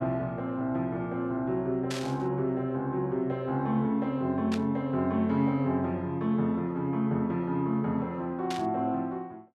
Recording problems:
static burst; at 2 s, at 4.5 s and at 8.5 s; peak -3 dB vs average level

